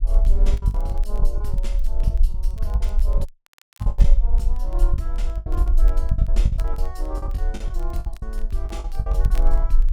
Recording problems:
rumble; below 44 Hz, SNR -11 dB
crackling; vinyl, SNR 19 dB
packet loss; 14% of the sound replaced, filled with the last packet
audio cutting out; at 3.5 s for 0.5 s

